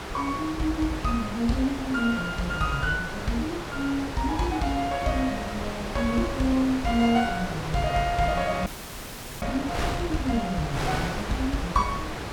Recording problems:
wind on the microphone; below 1.8 kHz, SNR 6 dB
audio freezing; at 8.5 s for 1 s

